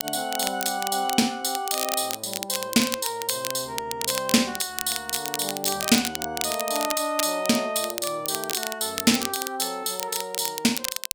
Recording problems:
crackling; vinyl, SNR 5 dB

